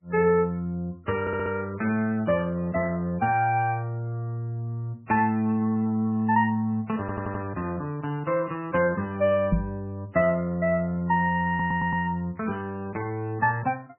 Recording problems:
lossy codec; MP3, log-spectral distance 2 dB, nothing above 2.8 kHz
audio stuttering; at 1 s, at 7 s and at 11 s
microphone bump; at 9.5 s; peak +6 dB vs average level

